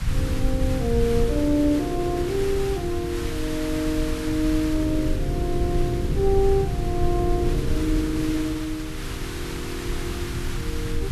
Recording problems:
background hiss; SNR 11 dB
low-frequency rumble; below 94 Hz, SNR 4 dB

